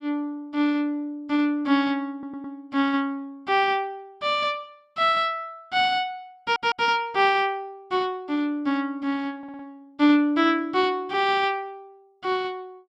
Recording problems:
audio stuttering; at 2 s, at 6.5 s and at 9.5 s

